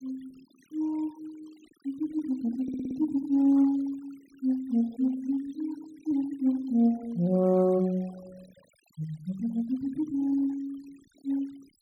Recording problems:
noise reduction artefacts; signal-to-artefact ratio 28 dB
stutter; at 2.5 s

